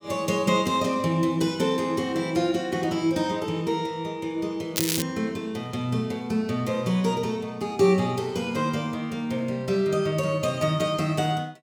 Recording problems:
crackling; at 5 s; loose cable, SNR 2 dB

